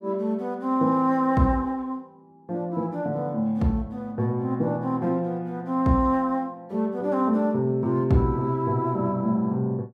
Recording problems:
none

